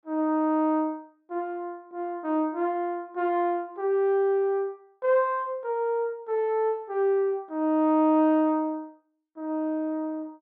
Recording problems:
none

